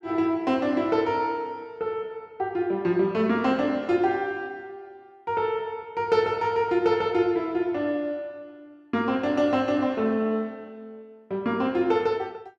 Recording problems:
none

